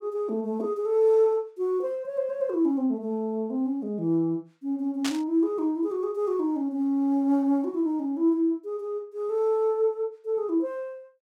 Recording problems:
static burst; at 5 s; peak -1 dB vs average level

